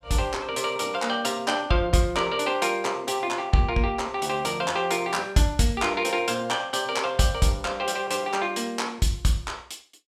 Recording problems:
none

